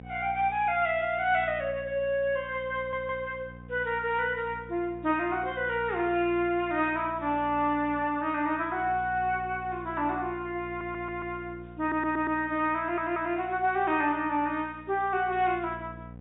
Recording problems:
treble missing; nothing above 4 kHz
electrical hum; 60 Hz, harmonics up to 1 kHz, SNR 18 dB
audio stuttering; 4 times, first at 3 s

